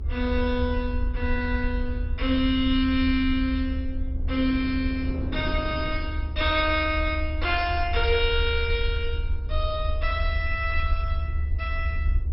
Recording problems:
codec artefacts; MP2, log-spectral distance 2 dB, nothing above 5.3 kHz
rumble; below 74 Hz, SNR 4 dB
wind on the microphone; below 300 Hz, SNR 16 dB

